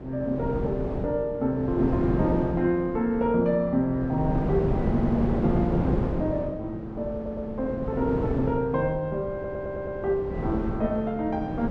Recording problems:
wind noise; below 390 Hz, SNR 4 dB
stutter; at 5 s, at 7 s and at 9.5 s

